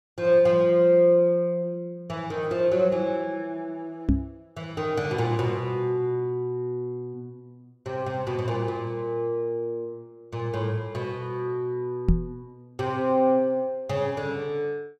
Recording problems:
microphone thump; at 4 s and at 12 s; peak +7 dB vs average level

